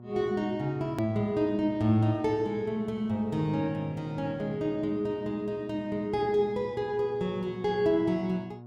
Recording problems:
hum; 60 Hz, harmonics up to 1.1 kHz, SNR 17 dB
edit click; at 1 s

